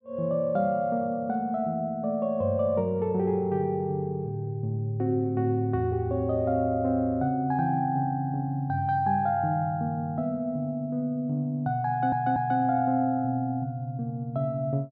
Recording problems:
audio stuttering; at 12 s

